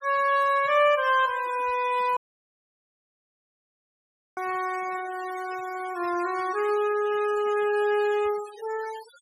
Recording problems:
denoising artefacts; signal-to-artefact ratio 18 dB
audio cutting out; at 2 s for 2 s

